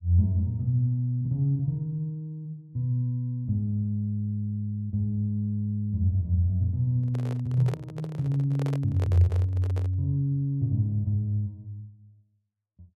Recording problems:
microphone handling noise; from 7 to 10 s; peak -6 dB vs average level

